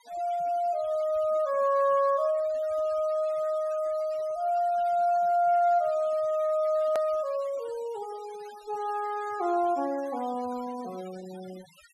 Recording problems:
denoising artefacts; signal-to-artefact ratio 24 dB
click at an edit; at 7 s

